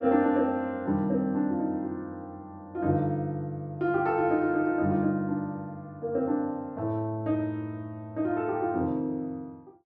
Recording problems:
none

